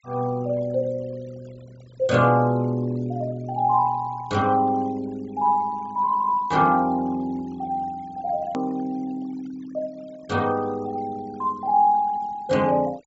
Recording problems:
low-pass filter; nothing above 8 kHz
denoising artefacts; signal-to-artefact ratio 25 dB
edit click; at 8.5 s

